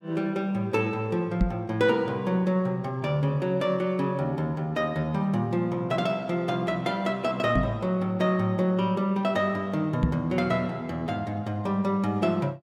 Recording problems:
microphone thump; at 1.5 s, at 7.5 s and at 10 s; peak +6 dB vs average level

